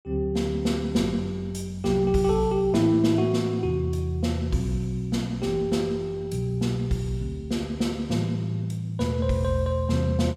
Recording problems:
none

